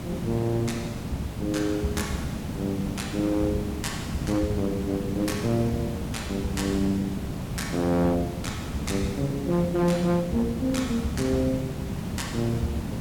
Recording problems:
distortion; hard clipping, uneven, signal-to-distortion ratio 11 dB
background hiss; slope -6 dB per octave, SNR 5 dB

